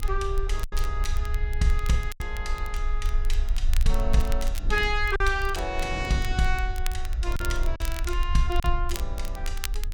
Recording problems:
rumble; below 50 Hz, strongest tone 24 Hz, SNR 1 dB
wind on the microphone; below 290 Hz, SNR 16 dB
crackling; vinyl, SNR 13 dB
packet loss; 3% of the sound replaced, filled with silence

